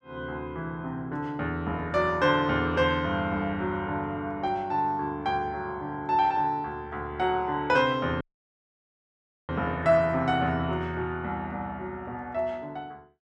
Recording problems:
dropout; at 8 s for 1.5 s

